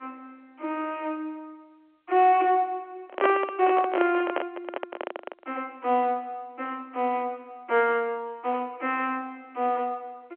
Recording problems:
phone line; 280 Hz to 3.7 kHz, G.711
microphone handling noise; from 3 to 5.5 s; peak +6 dB vs average level

